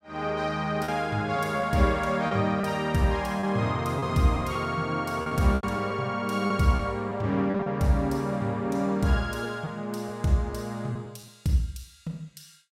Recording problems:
lost packets; 6% of the sound replaced, filled with repeated pitch periods

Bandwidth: 16 kHz